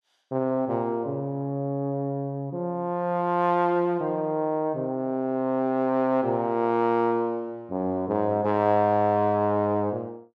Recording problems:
none

